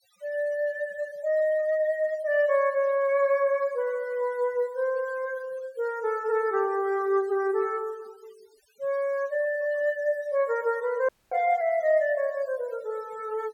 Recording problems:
noise reduction artefacts; signal-to-artefact ratio 25 dB
audio cutting out; at 11 s

